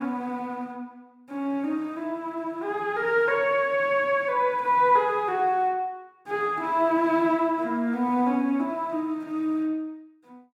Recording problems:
none

